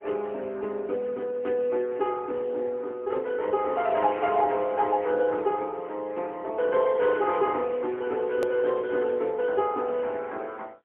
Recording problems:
phone line; 260 Hz to 3.2 kHz, AMR-NB, then MP3
click at an edit; at 8.5 s

